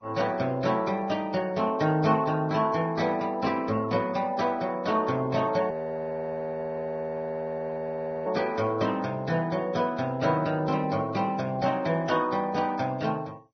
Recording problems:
lossy codec; MP2, then Vorbis, log-spectral distance 3 dB, nothing above 6 kHz
frozen audio; at 5.5 s for 2.5 s

